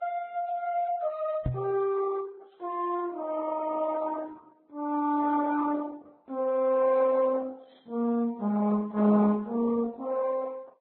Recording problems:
lossy compression; Opus, then Vorbis, log-spectral distance 2 dB, nothing above 3.9 kHz
microphone thump; at 1.5 s; peak +4 dB vs average level

